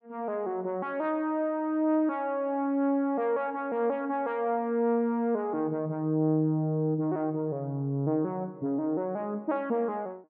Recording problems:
none

